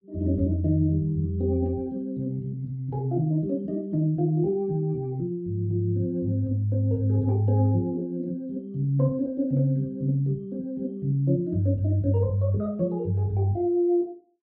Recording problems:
none

